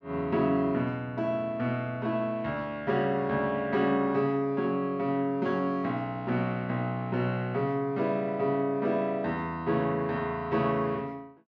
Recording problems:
none

